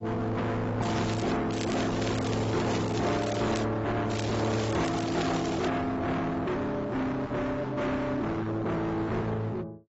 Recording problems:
lossy codec; AAC, then AAC, log-spectral distance 5 dB, nothing above 7.6 kHz
distortion; hard clipping, signal-to-distortion ratio 6 dB
crackle; at 1 s, from 1.5 to 3.5 s and from 4 to 5.5 s; loose cable, SNR 11 dB

